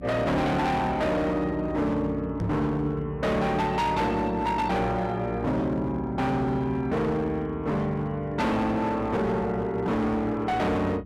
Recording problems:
distortion; hard clipping, signal-to-distortion ratio 7 dB
hum; 60 Hz, harmonics up to 300 Hz, SNR 15 dB
microphone bump; at 2.5 s; peak +2 dB vs average level

